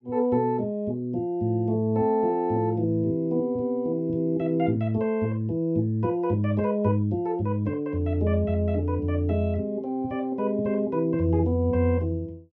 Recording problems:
none

